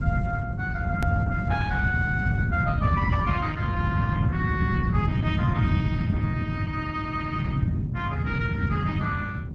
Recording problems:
codec artefacts; Opus, then Opus, log-spectral distance 2 dB, nothing above 13.7 kHz
hum; 50 Hz, harmonics up to 750 Hz, SNR 10 dB
low-frequency rumble; below 160 Hz, SNR -5 dB
hard cut with a click; at 1 s

